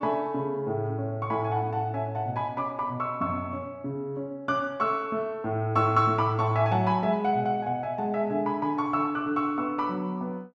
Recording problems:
none

